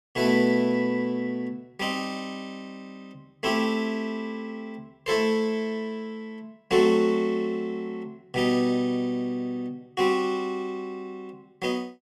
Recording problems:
none

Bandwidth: 13.5 kHz